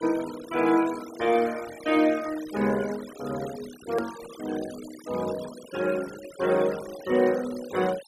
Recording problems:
noise reduction artefacts; signal-to-artefact ratio 16 dB
hard cut with a click; at 4 s

